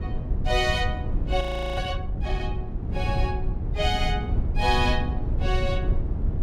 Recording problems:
low-frequency rumble; below 100 Hz, SNR 0 dB
frozen audio; at 1.5 s

